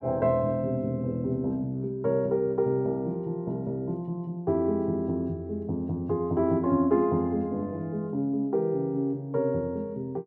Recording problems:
none

